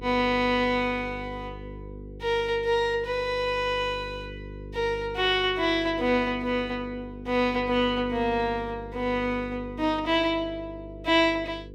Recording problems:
hum; 50 Hz, harmonics up to 500 Hz, SNR 15 dB

